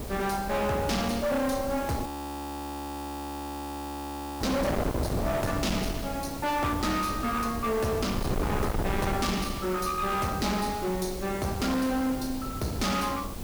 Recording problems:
distorted audio; hard clipping, uneven, signal-to-distortion ratio 5 dB
hiss; slope +1 dB per octave, SNR 14 dB
wind on the microphone; below 570 Hz, SNR 6 dB
frozen audio; at 2 s for 2.5 s

